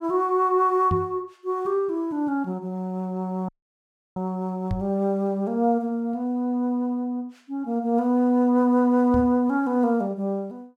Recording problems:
knock on the microphone; at 1 s, at 4.5 s and at 9 s; peak +1 dB vs average level
audio cutting out; at 3.5 s for 0.5 s

